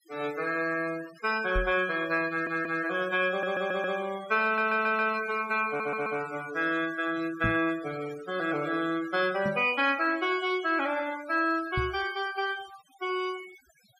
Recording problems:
noise reduction artefacts; signal-to-artefact ratio 17 dB
microphone bump; 4 times, first at 1.5 s; peak 0 dB vs average level
audio stuttering; 4 times, first at 2.5 s

